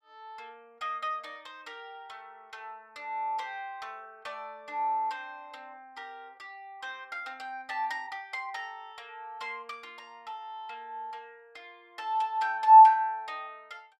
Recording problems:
none

